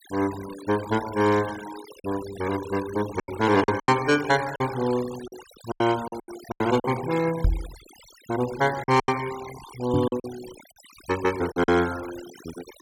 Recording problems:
noise reduction artefacts; signal-to-artefact ratio 14 dB
lost packets; 8% of the sound replaced, filled with silence
microphone bump; at 7.5 s and at 10 s; peak +6 dB vs average level

